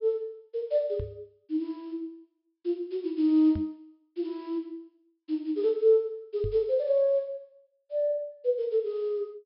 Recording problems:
treble cut off; nothing above 5.3 kHz
microphone thump; at 1 s, at 3.5 s and at 6.5 s; peak -2 dB vs average level

